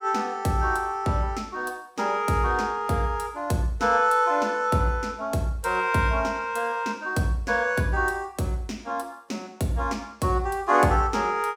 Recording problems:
none

